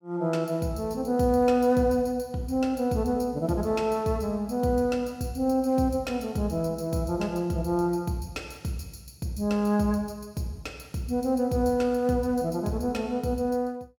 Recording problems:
none

